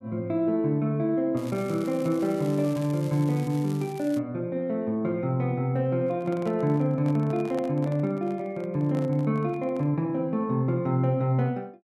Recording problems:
crackling; from 1.5 to 4 s; loose cable, SNR 21 dB
handling noise; from 6 to 10 s; peak -9 dB vs average level

